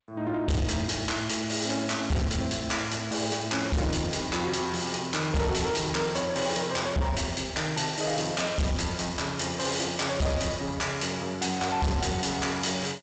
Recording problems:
codec artefacts; G.722, log-spectral distance 10 dB, nothing above 7.6 kHz
distorted audio; soft clipping, signal-to-distortion ratio 7 dB

